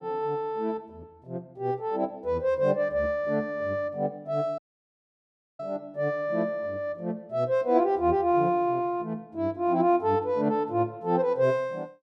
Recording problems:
audio cutting out; at 4.5 s for 1 s

